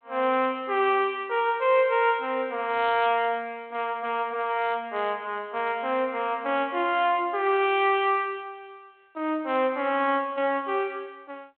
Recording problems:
telephone audio; 240 Hz to 3.5 kHz, G.726

